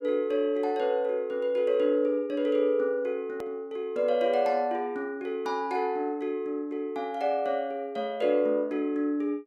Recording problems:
edit click; at 3.5 s

